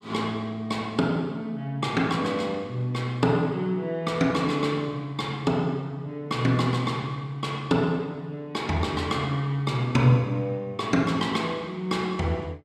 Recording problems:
none

